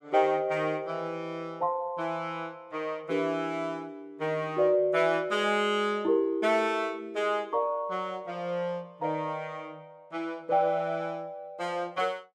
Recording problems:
none

